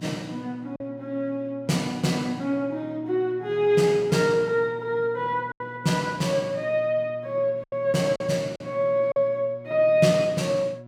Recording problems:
electrical hum; 60 Hz, harmonics up to 960 Hz, SNR 19 dB
lost packets; 3% of the sound replaced, filled with silence

